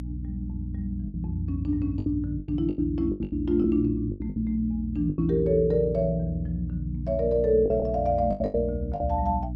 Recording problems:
electrical hum; 60 Hz, harmonics up to 300 Hz, SNR 8 dB
packet loss; 10% of the sound replaced, filled with the last packet

